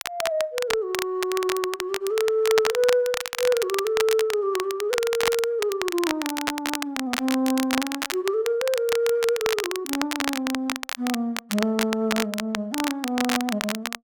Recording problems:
crackle; vinyl, SNR 5 dB

